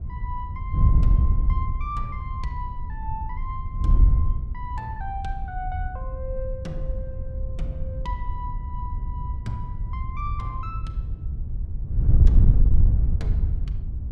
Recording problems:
wind noise; below 80 Hz, SNR -10 dB

